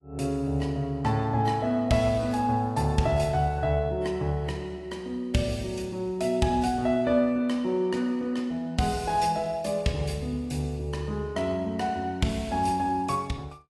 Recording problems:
codec artefacts; AAC, log-spectral distance 2 dB, nothing above 11.6 kHz

